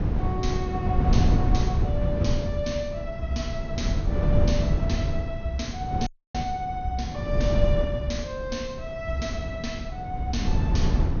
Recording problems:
low-pass filter; nothing above 6.6 kHz
wind noise; below 150 Hz, SNR -4 dB
audio cutting out; at 6 s

